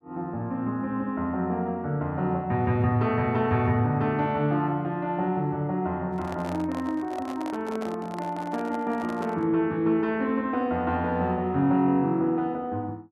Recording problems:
handling noise; from 6 to 9.5 s; peak -6 dB vs average level

